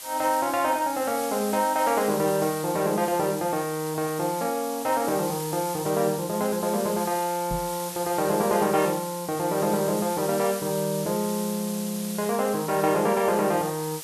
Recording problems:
background hiss; slope +1 dB per octave, SNR 10 dB
microphone thump; at 7.5 s; peak -4 dB vs average level

